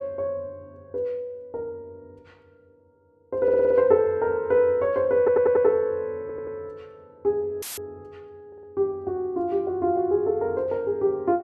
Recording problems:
audio stuttering; 4 times, first at 3.5 s
audio cutting out; at 7.5 s; filled with static

